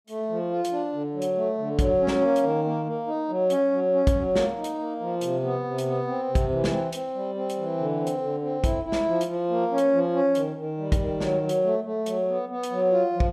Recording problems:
none

